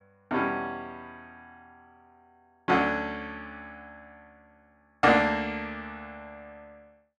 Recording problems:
none

